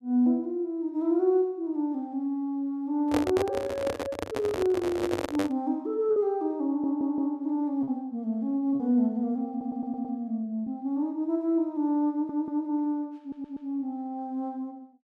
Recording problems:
lost packets; 1.5% of the sound replaced, filled with repeated pitch periods
handling noise; from 3 to 5.5 s; peak +4 dB vs average level
stutter; 4 times, first at 6.5 s

